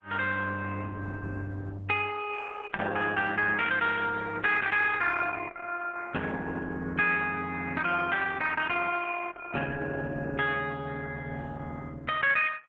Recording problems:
codec artefacts; Opus, log-spectral distance 4 dB

